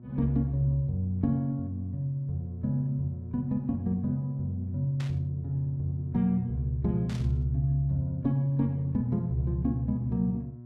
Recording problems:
hum; 60 Hz, harmonics up to 600 Hz, SNR 16 dB
burst of static; at 5 s and at 7 s; peak -10 dB vs average level

